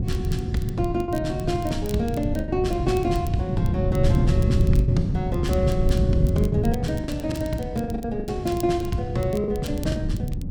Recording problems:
wind on the microphone; below 160 Hz, SNR -1 dB
crackle; vinyl, SNR 19 dB
lost packets; 7% of the sound replaced, filled with the last packet

